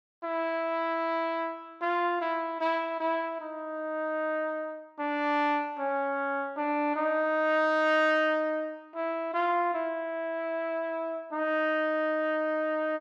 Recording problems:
none

